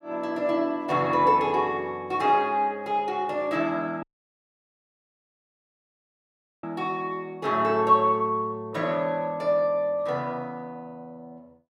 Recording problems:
audio cutting out; at 4 s for 2.5 s

